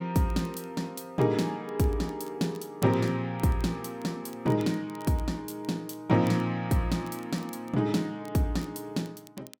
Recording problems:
crackle; vinyl, SNR 25 dB

